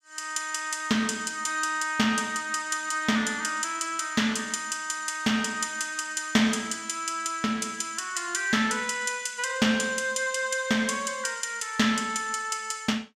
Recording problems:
none

